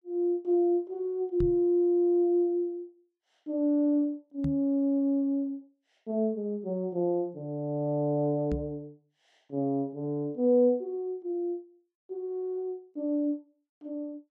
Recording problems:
microphone bump; at 1.5 s, at 4.5 s and at 8.5 s; peak 0 dB vs average level

